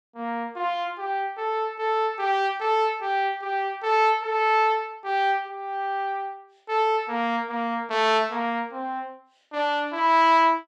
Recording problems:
none

